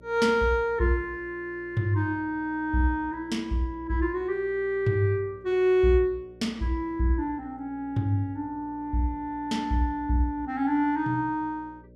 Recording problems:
electrical hum; 60 Hz, harmonics up to 600 Hz, SNR 24 dB

